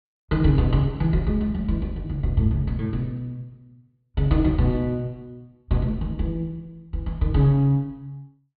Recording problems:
low-pass filter; nothing above 4.6 kHz

